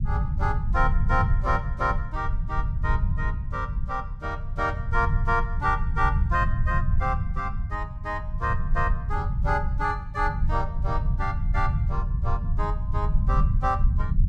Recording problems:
rumble; below 96 Hz, SNR -2 dB

